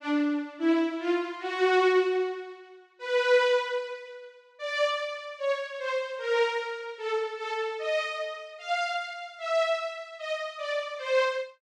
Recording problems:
none

